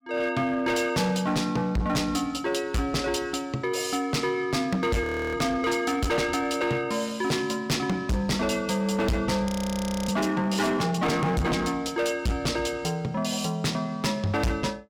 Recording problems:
distortion; hard clipping, signal-to-distortion ratio 7 dB
audio freezing; at 5 s and at 9.5 s for 0.5 s

